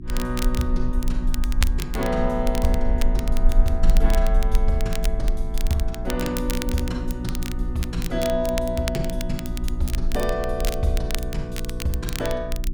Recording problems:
hum; 60 Hz, harmonics up to 360 Hz, SNR 7 dB
low-frequency rumble; below 42 Hz, strongest tone 22 Hz, SNR 1 dB
crackling; vinyl, SNR 9 dB

